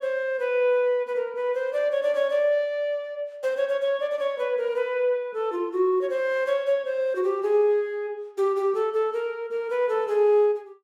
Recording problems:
none

